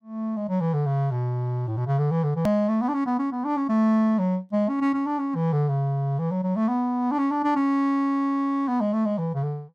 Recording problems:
edit click; at 2.5 s

